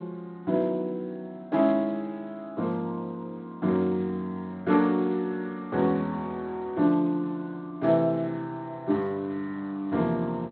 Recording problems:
lossy codec; Speex, log-spectral distance 2 dB

